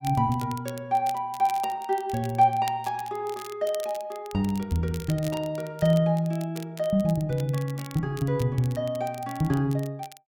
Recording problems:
crackle; vinyl, SNR 19 dB

